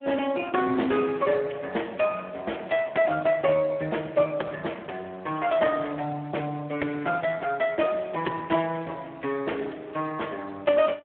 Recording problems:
telephone audio; 240 Hz to 2.9 kHz, Speex

